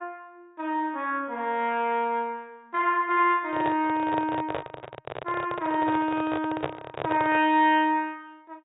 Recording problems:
low-pass filter; nothing above 3.1 kHz
codec artefacts; MP2, log-spectral distance 2 dB
handling noise; from 3.5 to 7.5 s; peak 0 dB vs average level

